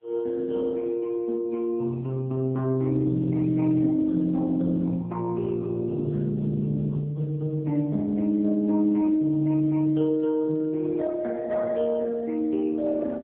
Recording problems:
telephone audio; 150 Hz to 2.4 kHz, AMR-NB

